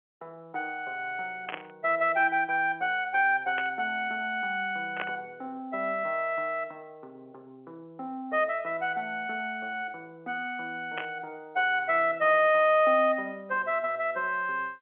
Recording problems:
telephone audio; 280 Hz to 3.3 kHz, G.711
burst of static; 4 times, first at 1.5 s; peak -1 dB vs average level

